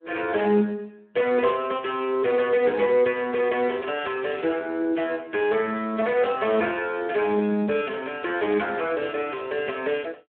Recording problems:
telephone audio; 240 Hz to 3.4 kHz, Speex

